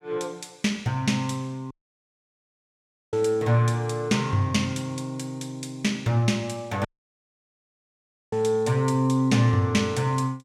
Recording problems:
dropout; at 1.5 s for 1.5 s and at 7 s for 1.5 s

